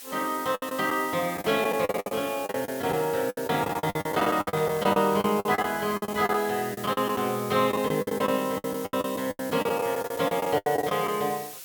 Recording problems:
hiss; slope +2 dB per octave, SNR 13 dB
lost packets; 18% of the sound replaced, filled with the last packet
handling noise; from 3.5 to 6.5 s; peak -8 dB vs average level

